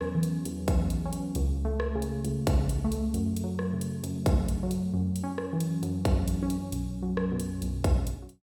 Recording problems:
none

